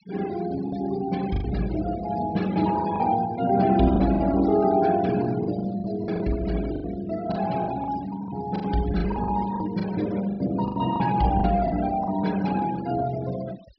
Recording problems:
treble missing; nothing above 5.5 kHz
noise reduction artefacts; signal-to-artefact ratio 17 dB
lost packets; 9% of the sound replaced, filled with the last packet

